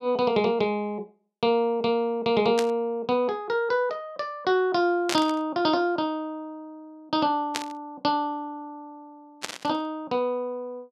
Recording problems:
burst of static; 4 times, first at 2.5 s; peak +2 dB vs average level

